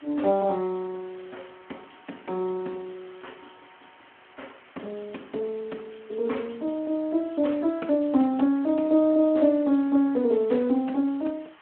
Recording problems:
telephone audio; 190 Hz to 3.4 kHz, Speex
hiss; SNR 27 dB

